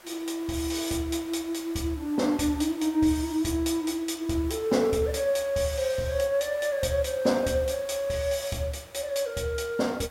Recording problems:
background hiss; SNR 21 dB

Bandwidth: 16 kHz